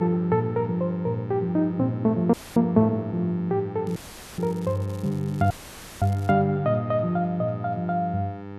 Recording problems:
mains hum; 50 Hz, harmonics up to 2.3 kHz, SNR 13 dB
audio cutting out; at 2.5 s, at 4 s and at 5.5 s for 0.5 s; filled with static
crackling; from 4 to 6.5 s; loose cable, SNR 27 dB

